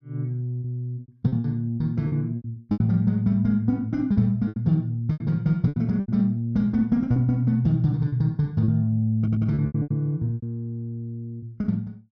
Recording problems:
lost packets; 11% of the sound replaced, filled with repeated pitch periods
audio stuttering; at 9 s

